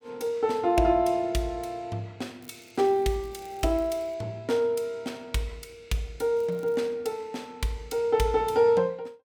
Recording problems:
crackle; from 2.5 to 4 s and at 6.5 s; loose cable, SNR 29 dB

